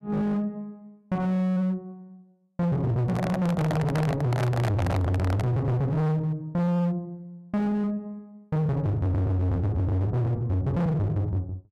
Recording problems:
distorted audio; hard clipping, signal-to-distortion ratio 7 dB
handling noise; from 3 to 5.5 s; peak +3 dB vs average level

